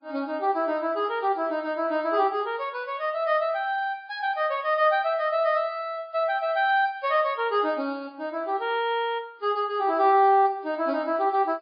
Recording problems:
codec artefacts; MP3, log-spectral distance 2 dB

